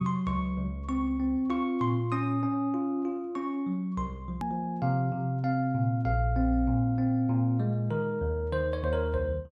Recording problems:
hard cut with a click; at 4.5 s

